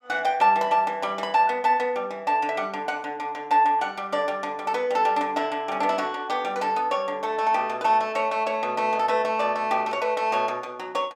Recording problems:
none

